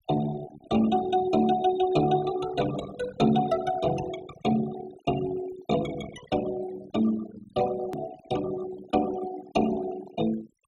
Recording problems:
denoising artefacts; signal-to-artefact ratio 15 dB
edit click; at 8 s

